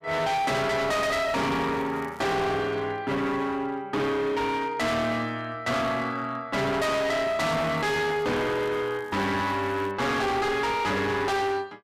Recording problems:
distorted audio; hard clipping, signal-to-distortion ratio 6 dB
crackling; from 1 to 2.5 s and from 7.5 to 10 s; loose cable, SNR 29 dB

